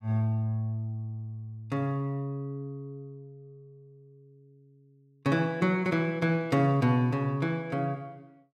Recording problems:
none

